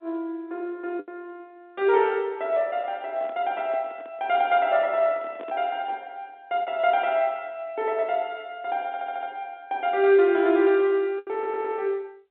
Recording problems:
phone line; 220 Hz to 3.6 kHz, G.711
lost packets; 1.8% of the sound replaced, filled with the last packet
microphone handling noise; from 3 to 6 s; peak -12 dB vs average level
stutter; at 9 s and at 11 s

